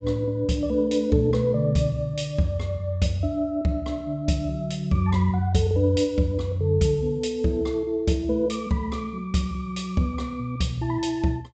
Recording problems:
treble missing; nothing above 8 kHz

